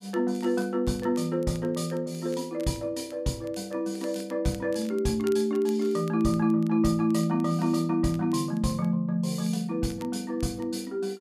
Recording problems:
crackling; vinyl, SNR 26 dB

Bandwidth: 14 kHz